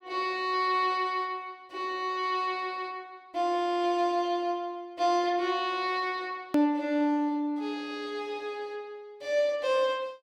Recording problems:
edit click; at 6.5 s

